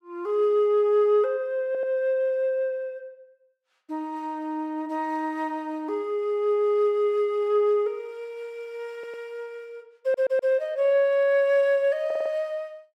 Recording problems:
audio stuttering; 4 times, first at 1.5 s

